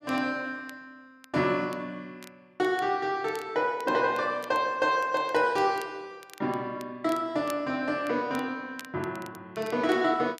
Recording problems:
crackle; vinyl, SNR 23 dB

